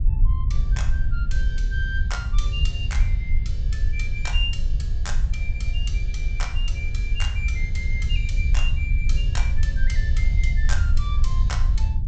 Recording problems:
treble missing; nothing above 8 kHz
rumble; below 64 Hz, SNR -9 dB

